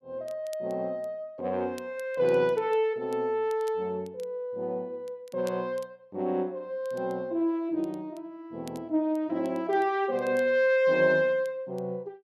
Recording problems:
crackle; vinyl, SNR 28 dB

